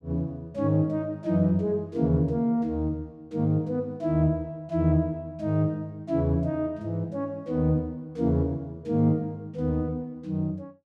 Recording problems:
none

